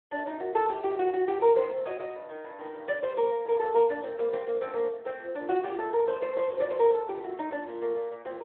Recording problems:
telephone audio; 320 Hz to 3.7 kHz, Speex

